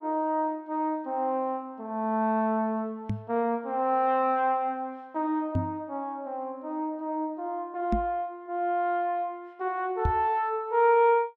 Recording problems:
microphone bump; 4 times, first at 3 s; peak +4 dB vs average level

